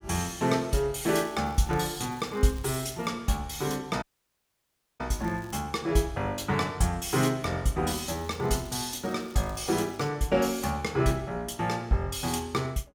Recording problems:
crackling; from 1 to 3 s, at 5 s and from 8 to 10 s; loose cable, SNR 25 dB
audio cutting out; at 4 s for 1 s

